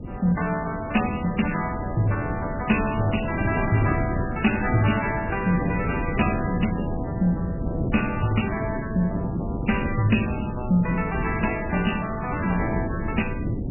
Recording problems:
codec artefacts; MP3, log-spectral distance 4 dB, nothing above 2.8 kHz
wind noise; below 270 Hz, SNR 5 dB

